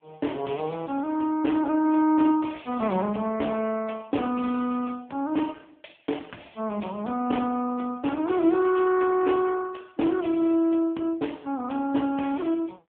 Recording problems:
telephone audio; 220 Hz to 3.4 kHz, AMR-NB

